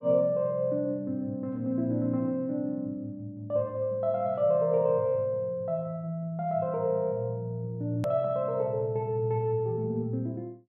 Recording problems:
click at an edit; at 8 s

